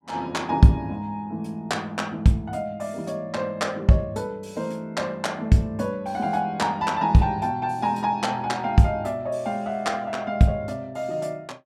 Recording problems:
none

